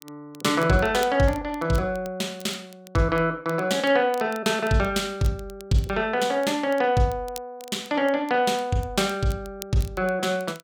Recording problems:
crackle; vinyl, SNR 23 dB

